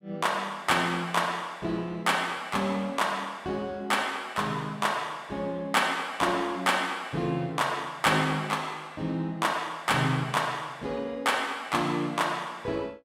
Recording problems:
none

